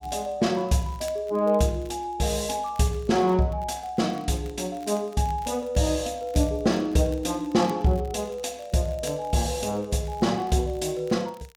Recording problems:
crackle; vinyl, SNR 27 dB

